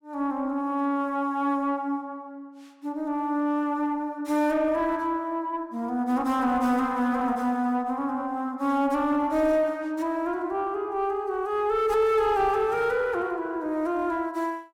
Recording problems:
distortion; soft clipping, signal-to-distortion ratio 11 dB

